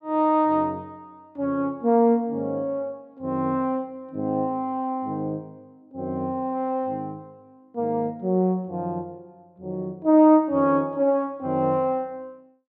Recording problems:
none

